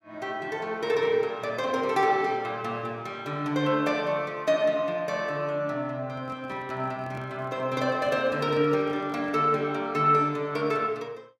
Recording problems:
handling noise; from 6 to 9.5 s; peak -12 dB vs average level

